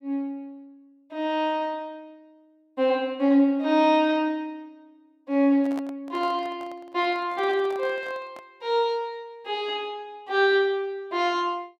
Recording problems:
handling noise; from 5.5 to 8.5 s; peak -10 dB vs average level

